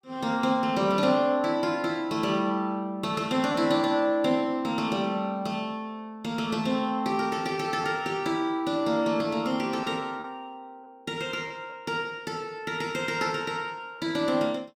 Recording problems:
lost packets; 1.2% of the sound replaced, filled with repeated pitch periods

